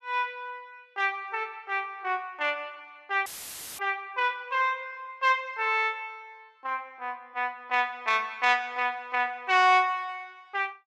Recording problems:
dropout; at 3.5 s for 0.5 s; filled with static

